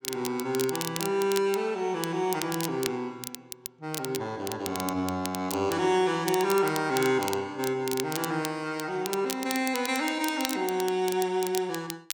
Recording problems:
crackling; vinyl, SNR 9 dB

